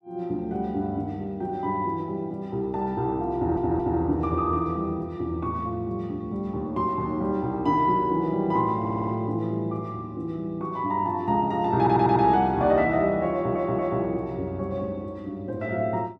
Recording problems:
stutter; 4 times, first at 3.5 s

